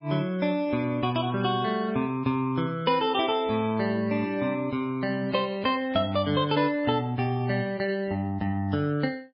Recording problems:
lossy compression; MP3, log-spectral distance 2 dB, nothing above 4.9 kHz

